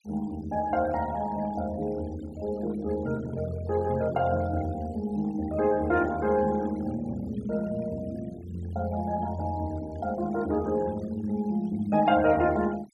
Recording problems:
noise reduction artefacts; signal-to-artefact ratio 20 dB

